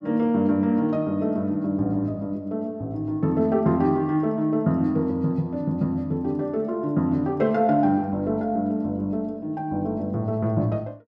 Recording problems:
none

